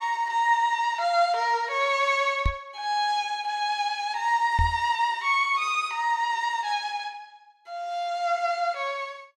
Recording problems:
microphone thump; at 2.5 s and at 4.5 s; peak +3 dB vs average level

